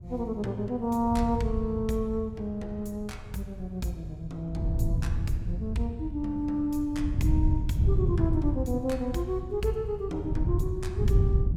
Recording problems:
wind on the microphone; below 120 Hz, SNR 0 dB

